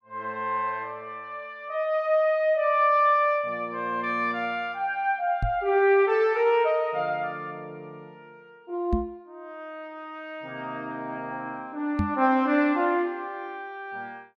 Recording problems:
microphone thump; at 5.5 s, at 9 s and at 12 s; peak +3 dB vs average level

